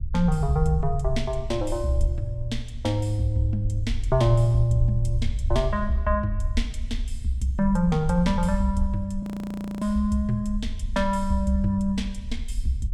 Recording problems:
rumble; below 64 Hz, SNR 7 dB
audio freezing; at 9 s for 0.5 s

